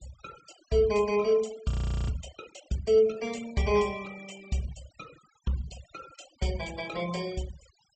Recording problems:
treble cut off; nothing above 8 kHz
noise reduction artefacts; signal-to-artefact ratio 20 dB
audio freezing; at 1.5 s

